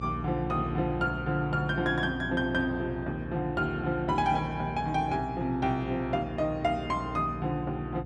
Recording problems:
mains hum; 60 Hz, harmonics up to 480 Hz, SNR 10 dB

